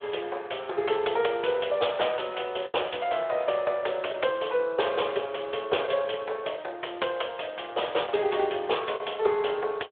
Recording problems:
phone line; 340 Hz to 3.6 kHz, Speex
packet loss; 2% of the sound replaced, filled with the last packet

